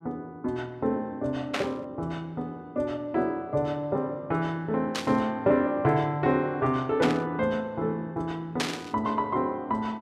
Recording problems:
burst of static; 4 times, first at 1.5 s; peak +4 dB vs average level

